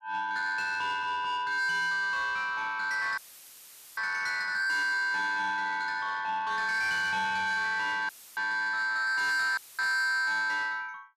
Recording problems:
distorted audio; soft clipping, signal-to-distortion ratio 10 dB
audio cutting out; at 3 s for 1 s, at 8 s and at 9.5 s; filled with static

